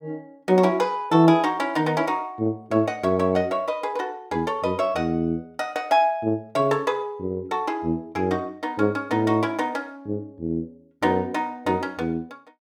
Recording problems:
none

